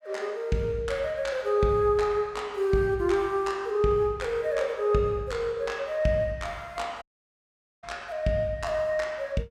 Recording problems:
audio cutting out; at 7 s for 1 s

